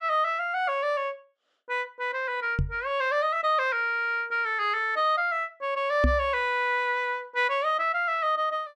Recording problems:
knock on the microphone; at 2.5 s and at 6 s; peak +5 dB vs average level

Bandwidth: 13 kHz